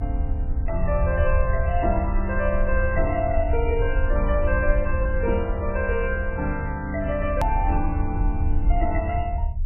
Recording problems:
lossy codec; MP3, log-spectral distance 2 dB, nothing above 2.7 kHz
low-frequency rumble; below 74 Hz, SNR 1 dB
hard cut with a click; at 7.5 s

